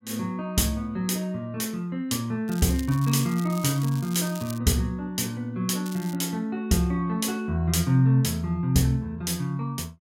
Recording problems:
crackle; from 2.5 to 4.5 s and at 6 s; loose cable, SNR 17 dB

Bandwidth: 16 kHz